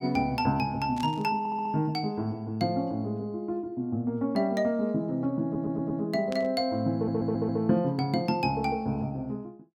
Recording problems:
burst of static; at 1 s and at 6.5 s; peak -9 dB vs average level
stutter; at 1.5 s, at 5.5 s and at 7 s

